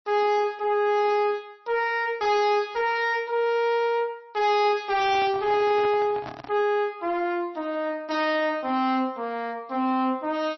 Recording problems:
lossy codec; MP3, log-spectral distance 2 dB, nothing above 5 kHz
distorted audio; soft clipping, signal-to-distortion ratio 11 dB
microphone handling noise; from 5 to 6.5 s; peak -8 dB vs average level

